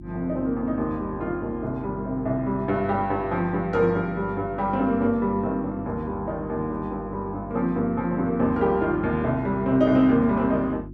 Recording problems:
hum; 50 Hz, harmonics up to 350 Hz, SNR 15 dB

